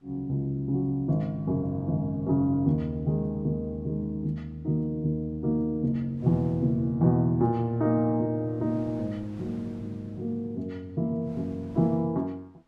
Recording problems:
wind noise; below 690 Hz, SNR 26 dB

